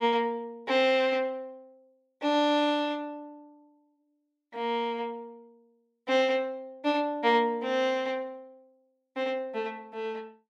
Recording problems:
none

